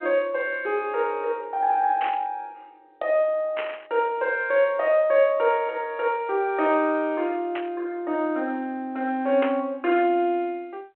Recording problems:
phone line; 280 Hz to 3.2 kHz, G.726
static burst; 4 times, first at 2 s; peak -2 dB vs average level

